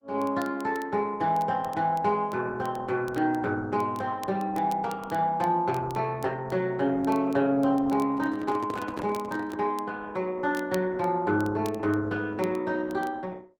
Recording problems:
lossy codec; Opus, log-spectral distance 3 dB
crackle; vinyl, SNR 25 dB
microphone handling noise; from 8 to 9.5 s; peak -3 dB vs average level

